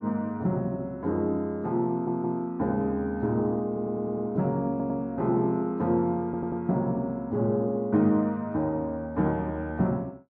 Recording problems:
stutter; 4 times, first at 2 s

